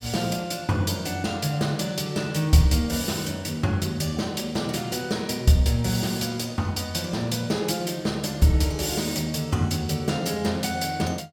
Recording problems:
none

